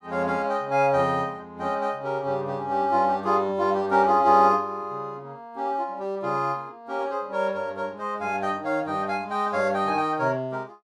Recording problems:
none

